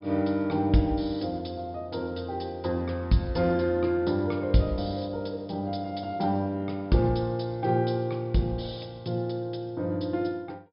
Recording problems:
low-pass filter; nothing above 5.5 kHz

